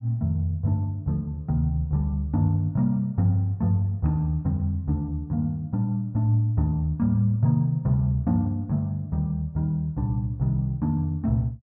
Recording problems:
none

